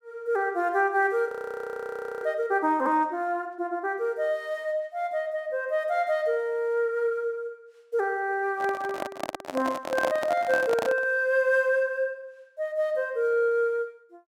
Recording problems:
frozen audio; at 1.5 s for 1 s
microphone handling noise; from 8.5 to 11 s; peak +3 dB vs average level

